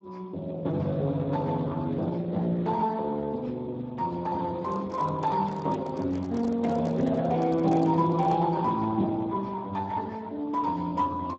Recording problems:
lossy compression; Speex, log-spectral distance 3 dB
handling noise; from 4.5 to 8.5 s; peak -4 dB vs average level

